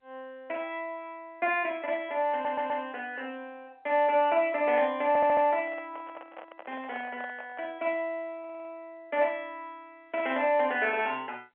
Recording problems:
phone line; 340 Hz to 3.3 kHz, G.711
audio stuttering; at 2.5 s, at 5 s and at 8.5 s
microphone handling noise; from 5.5 to 7.5 s; peak -11 dB vs average level

